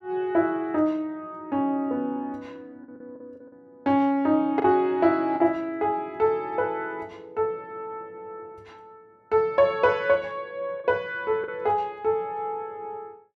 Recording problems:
lost packets; 3% of the sound replaced, filled with the last packet

